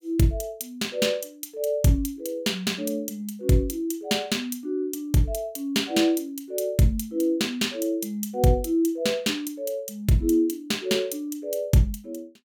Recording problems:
none

